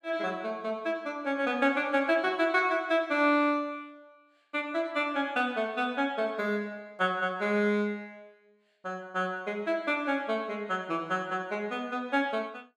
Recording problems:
none

